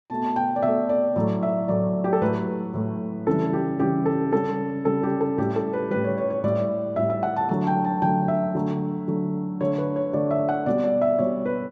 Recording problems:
none

